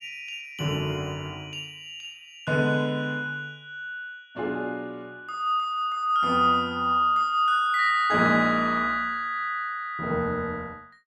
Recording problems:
none

